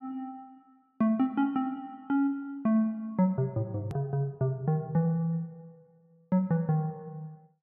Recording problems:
edit click; at 4 s

